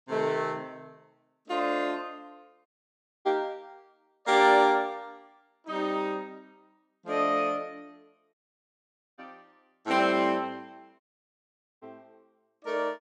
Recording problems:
dropout; at 2.5 s for 0.5 s, at 8.5 s for 1 s and at 11 s for 1 s

